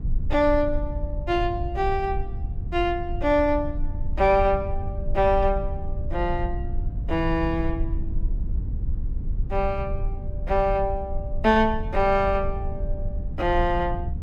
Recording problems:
rumble; below 70 Hz, SNR 6 dB

